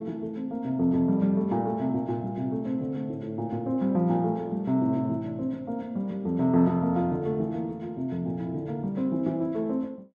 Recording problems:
none

